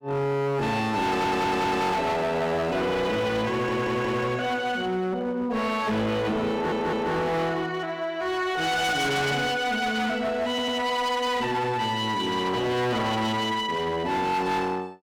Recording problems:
distortion; hard clipping, signal-to-distortion ratio 7 dB
stutter; 4 times, first at 1 s

